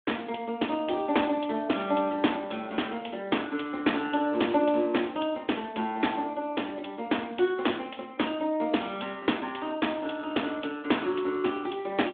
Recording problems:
telephone audio; 220 Hz to 3.5 kHz, Speex

